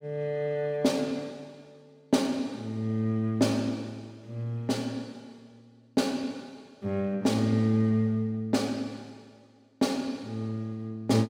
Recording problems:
none

